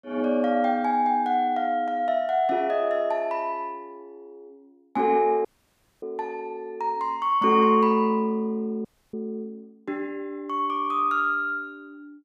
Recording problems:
audio cutting out; at 5.5 s for 0.5 s and at 9 s

